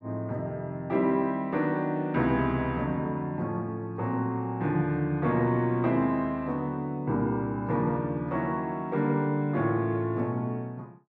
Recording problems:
none

